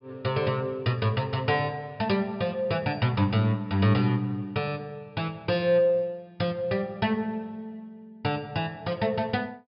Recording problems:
treble missing; nothing above 5.5 kHz

